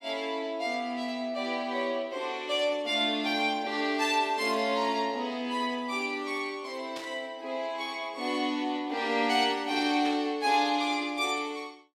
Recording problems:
burst of static; at 7 s and at 10 s; peak -8 dB vs average level

